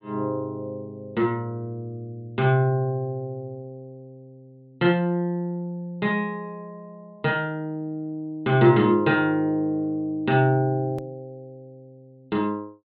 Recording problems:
treble missing; nothing above 4.5 kHz
hard cut with a click; at 11 s

